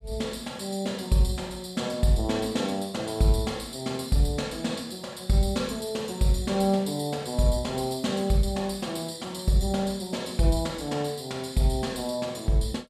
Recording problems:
none

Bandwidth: 14.5 kHz